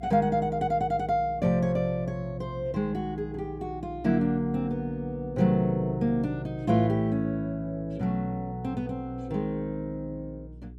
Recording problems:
mains hum; 60 Hz, harmonics up to 420 Hz, SNR 18 dB

